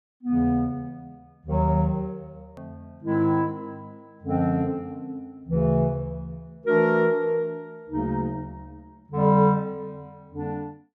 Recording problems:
click at an edit; at 2.5 s

